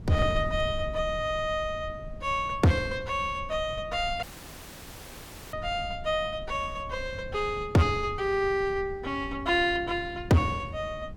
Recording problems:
distorted audio; hard clipping, signal-to-distortion ratio 11 dB
wind noise; below 130 Hz, SNR 13 dB
dropout; at 4 s for 1.5 s

